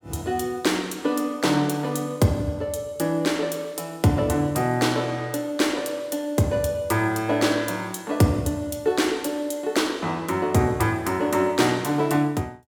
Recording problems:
none

